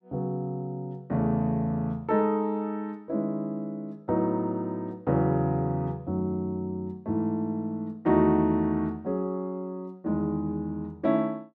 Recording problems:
none

